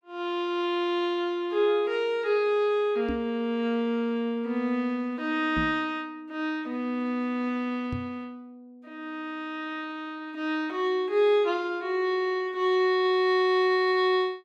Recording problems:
microphone bump; at 3 s, at 5.5 s and at 8 s; peak -1 dB vs average level

